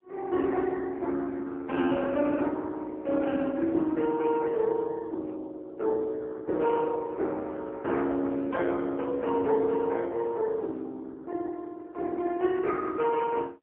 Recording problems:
phone line; 220 Hz to 3.2 kHz, AMR-NB, then MP3

